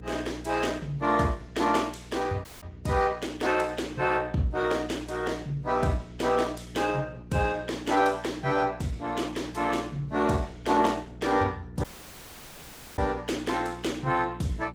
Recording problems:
codec artefacts; Opus, log-spectral distance 4 dB, nothing above 18.5 kHz
hum; 60 Hz, harmonics up to 480 Hz, SNR 15 dB
audio cutting out; at 2.5 s and at 12 s for 1 s

